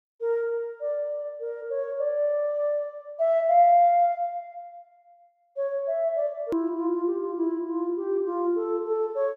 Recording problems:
hard cut with a click; at 6.5 s

